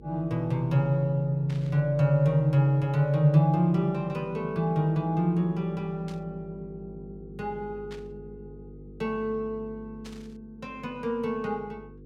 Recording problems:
hum; 50 Hz, harmonics up to 500 Hz, SNR 21 dB
burst of static; 4 times, first at 1.5 s; peak -15 dB vs average level

